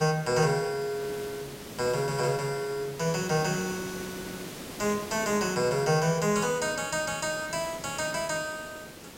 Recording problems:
background hiss; slope -4 dB per octave, SNR 13 dB

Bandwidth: 16 kHz